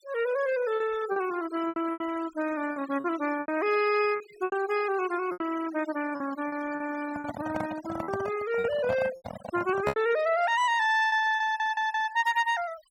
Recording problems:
noise reduction artefacts; signal-to-artefact ratio 16 dB
packet loss; 9% of the sound replaced, filled with repeated pitch periods
microphone handling noise; from 7 to 10 s; peak +2 dB vs average level
stutter; at 11 s

